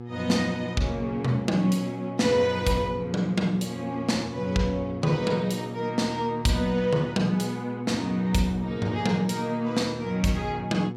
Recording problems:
hum; 60 Hz, harmonics up to 1.3 kHz, SNR 11 dB

